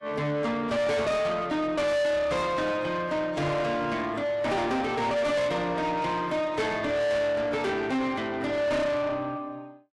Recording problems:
lossy compression; AAC, log-spectral distance 2 dB, nothing above 11.3 kHz
distortion; soft clipping, signal-to-distortion ratio 7 dB

